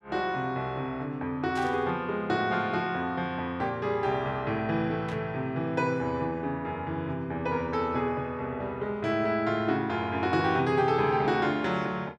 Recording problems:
burst of static; at 1.5 s and at 5 s; peak -10 dB vs average level

